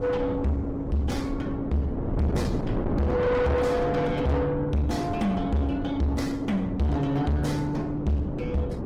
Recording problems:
lossy codec; Opus, log-spectral distance 2 dB, nothing above 19 kHz
distortion; soft clipping, signal-to-distortion ratio 6 dB
wind noise; below 430 Hz, SNR 5 dB

